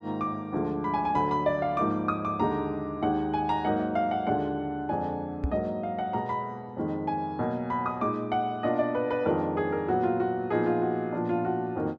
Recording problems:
knock on the microphone; at 5.5 s; peak +3 dB vs average level

